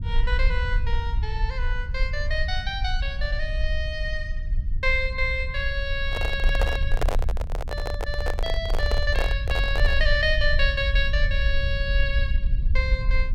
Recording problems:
low-frequency rumble; below 58 Hz, SNR 0 dB
microphone handling noise; from 6 to 10 s; peak +4 dB vs average level

